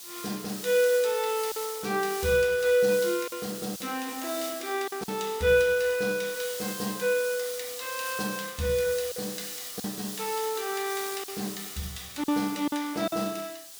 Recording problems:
background hiss; SNR 9 dB
packet loss; 3% of the sound replaced, filled with silence

